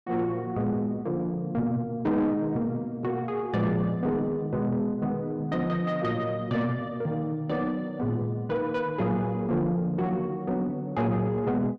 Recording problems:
distorted audio; soft clipping, signal-to-distortion ratio 12 dB

